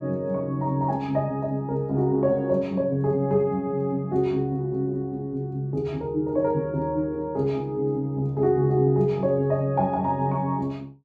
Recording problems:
none

